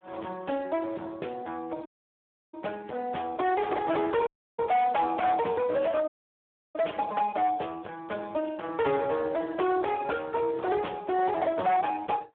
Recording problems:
telephone audio; 220 Hz to 3.6 kHz, Speex
distortion; hard clipping, uneven, signal-to-distortion ratio 7 dB
dropout; at 2 s for 0.5 s, at 4.5 s and at 6 s for 0.5 s

